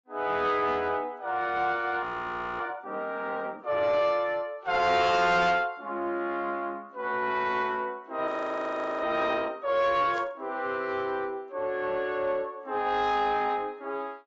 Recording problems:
lossy compression; AAC, log-spectral distance 2 dB, nothing above 7.3 kHz
distortion; soft clipping, signal-to-distortion ratio 10 dB
audio freezing; at 2 s for 0.5 s and at 8.5 s for 0.5 s
burst of static; at 5 s and at 10 s; peak -12 dB vs average level

